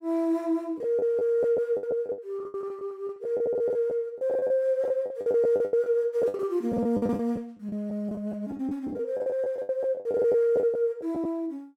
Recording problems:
packet loss; 17% of the sound replaced, filled with the last packet

